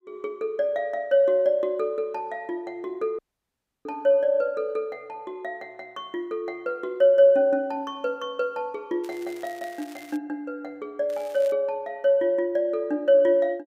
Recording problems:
audio cutting out; at 3 s for 0.5 s
crackle; from 9 to 10 s and at 11 s; loose cable, SNR 25 dB

